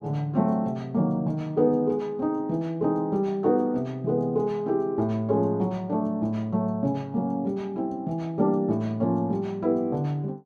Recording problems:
none

